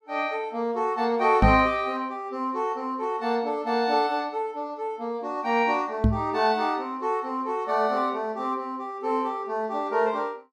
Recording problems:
microphone thump; at 1.5 s and at 6 s; peak +8 dB vs average level

